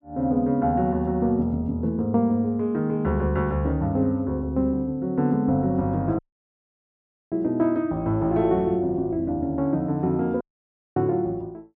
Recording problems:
dropout; at 6 s for 1 s and at 10 s for 0.5 s

